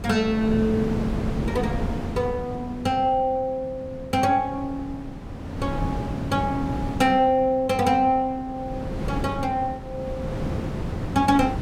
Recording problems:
wind noise; below 340 Hz, SNR 7 dB

